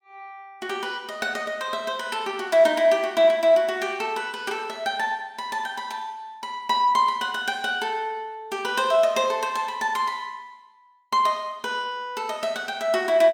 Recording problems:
none

